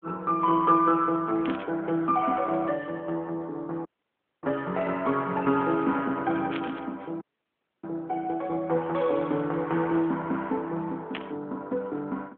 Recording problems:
telephone audio; 170 Hz to 3.4 kHz, AMR-NB
burst of static; at 1.5 s, at 6.5 s and at 11 s; peak -4 dB vs average level
audio cutting out; at 4 s for 0.5 s and at 7 s for 0.5 s

